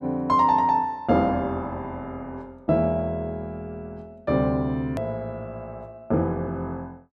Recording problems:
edit click; at 5 s

